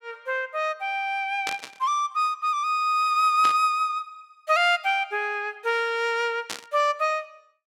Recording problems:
static burst; at 1.5 s, at 3.5 s and at 6.5 s; peak -2 dB vs average level

